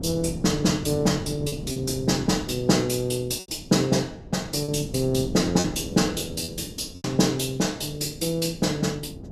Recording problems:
wind on the microphone; below 300 Hz, SNR 13 dB
packet loss; 4% of the sound replaced, filled with repeated pitch periods

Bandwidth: 14.5 kHz